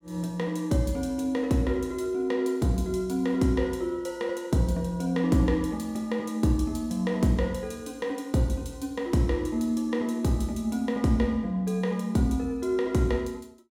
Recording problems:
none

